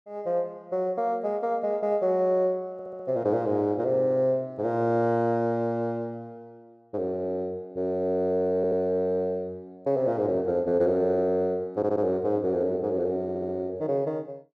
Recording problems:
audio stuttering; 4 times, first at 2.5 s

